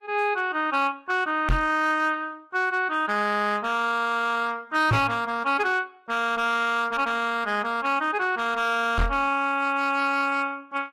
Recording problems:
lossy codec; Vorbis, log-spectral distance 2 dB, nothing above 13.1 kHz
distorted audio; hard clipping, signal-to-distortion ratio 10 dB
microphone bump; at 1.5 s, at 5 s and at 9 s; peak +5 dB vs average level

